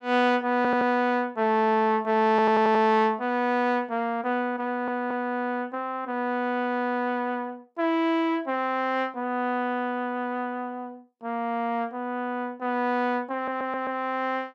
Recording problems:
audio stuttering; 4 times, first at 0.5 s

